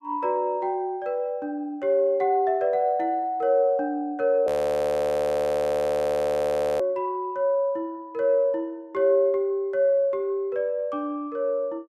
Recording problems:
frozen audio; at 4.5 s for 2.5 s

